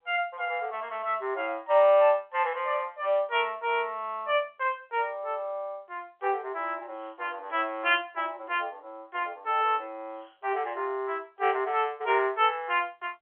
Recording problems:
phone line; 340 Hz to 3.4 kHz, G.711

